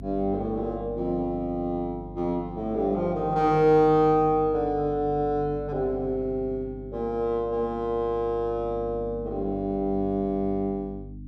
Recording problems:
hum; 50 Hz, harmonics up to 300 Hz, SNR 15 dB

